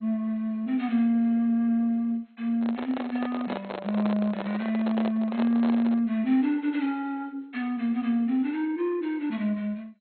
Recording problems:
codec artefacts; MP2, log-spectral distance 2 dB, nothing above 4 kHz
microphone handling noise; from 2.5 to 6 s; peak -2 dB vs average level

